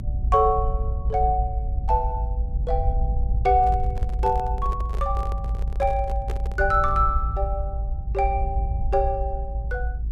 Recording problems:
low-frequency rumble; below 62 Hz, strongest tone 54 Hz, SNR 2 dB
handling noise; from 3.5 to 7 s; peak -6 dB vs average level

